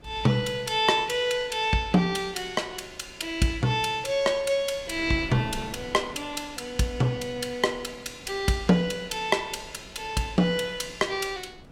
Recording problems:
wind noise; below 460 Hz, SNR 21 dB

